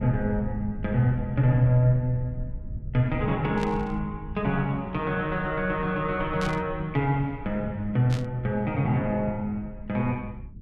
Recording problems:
rumble; below 110 Hz, SNR 13 dB
burst of static; at 3.5 s, at 6.5 s and at 8 s; peak -7 dB vs average level

